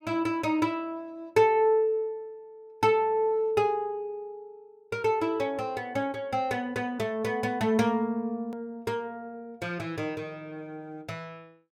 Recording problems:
edit click; at 8.5 s

